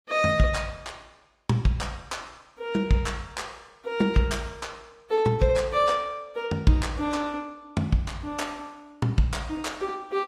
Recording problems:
lossy compression; AAC, log-spectral distance 2 dB

